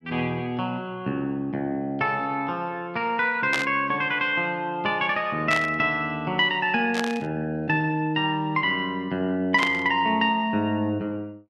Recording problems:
burst of static; 4 times, first at 3.5 s; peak +1 dB vs average level

